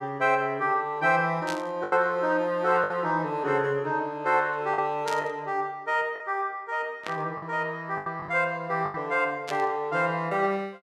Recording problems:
lost packets; 4% of the sound replaced, filled with the last packet
burst of static; 4 times, first at 1.5 s; peak -4 dB vs average level

